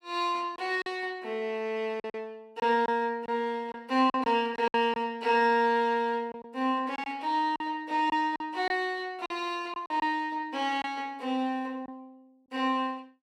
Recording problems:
lost packets; 6% of the sound replaced, filled with silence

